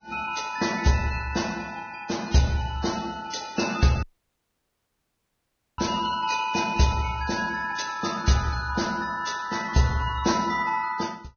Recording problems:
codec artefacts; Vorbis, log-spectral distance 5 dB, nothing above 6.5 kHz
dropout; at 4 s for 2 s

